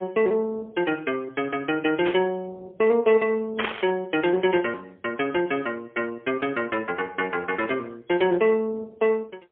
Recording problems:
telephone audio; 300 Hz to 3.3 kHz, AMR-NB, then MP3
burst of static; at 2 s and at 3.5 s; peak +2 dB vs average level

